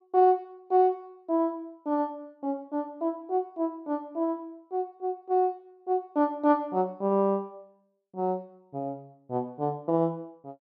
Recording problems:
none

